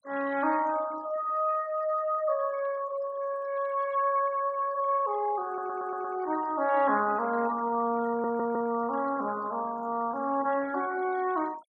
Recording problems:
denoising artefacts; signal-to-artefact ratio 19 dB
audio stuttering; at 5.5 s and at 8 s

